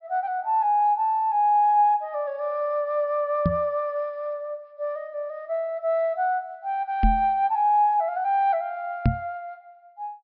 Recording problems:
treble cut off; nothing above 5.5 kHz
knock on the microphone; at 3.5 s, at 7 s and at 9 s; peak +6 dB vs average level

